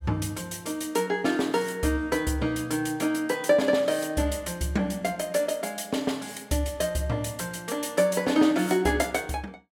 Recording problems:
none

